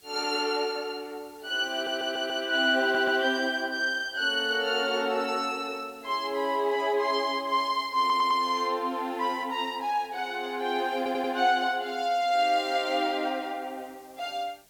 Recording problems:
background hiss; SNR 29 dB
audio stuttering; 4 times, first at 1.5 s

